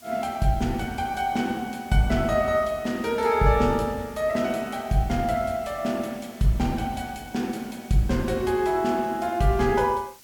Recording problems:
hiss; slope 0 dB per octave, SNR 24 dB

